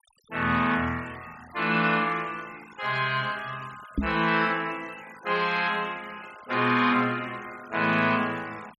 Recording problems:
noise reduction artefacts; signal-to-artefact ratio 21 dB
knock on the microphone; at 4 s; peak +2 dB vs average level

